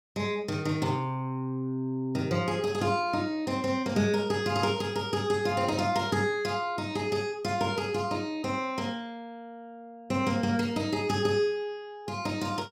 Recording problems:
static burst; at 11 s; peak -13 dB vs average level

